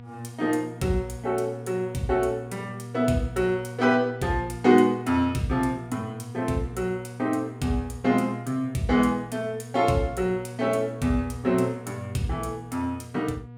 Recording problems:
hum; 60 Hz, harmonics up to 960 Hz, SNR 14 dB

